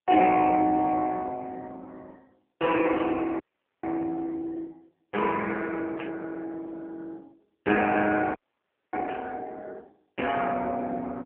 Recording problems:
telephone audio; 260 Hz to 3.1 kHz, AMR-NB
burst of static; at 3 s, at 6 s and at 9 s; peak -8 dB vs average level
frozen audio; at 3.5 s and at 8.5 s for 0.5 s

